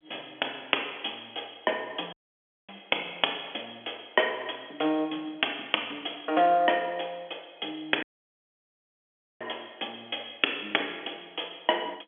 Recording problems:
phone line; 240 Hz to 3.4 kHz, G.711
audio cutting out; at 2 s for 0.5 s and at 8 s for 1.5 s

